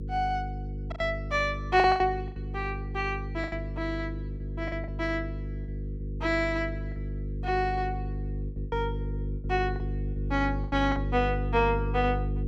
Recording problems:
electrical hum; 50 Hz, harmonics up to 500 Hz, SNR 5 dB
lost packets; 8% of the sound replaced, filled with the last packet

